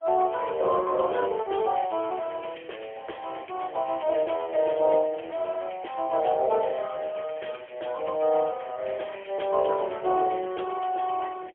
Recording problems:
phone line; 320 Hz to 3.3 kHz, AMR-NB, then MP3

